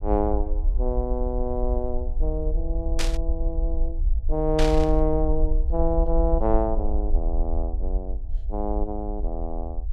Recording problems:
low-frequency rumble; below 52 Hz, SNR 0 dB
burst of static; at 3 s and at 4.5 s; peak +3 dB vs average level

